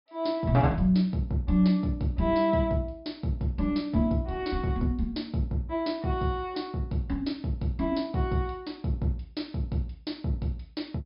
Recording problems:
treble cut off; nothing above 5.5 kHz

